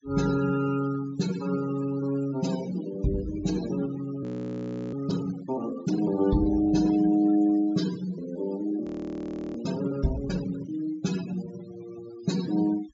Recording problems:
treble cut off; nothing above 8 kHz
denoising artefacts; signal-to-artefact ratio 14 dB
audio freezing; at 4 s for 0.5 s and at 9 s for 0.5 s

